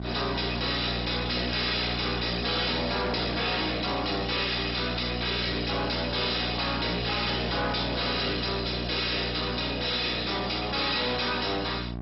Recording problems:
lossy compression; MP2, log-spectral distance 15 dB, nothing above 5.3 kHz
distortion; soft clipping, signal-to-distortion ratio 9 dB
hum; 60 Hz, harmonics up to 1.1 kHz, SNR 7 dB

